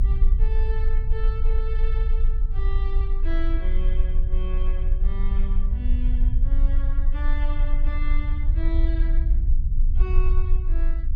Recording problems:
low-frequency rumble; below 50 Hz, strongest tone 24 Hz, SNR -13 dB

